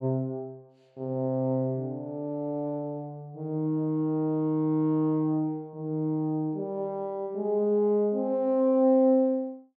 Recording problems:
none

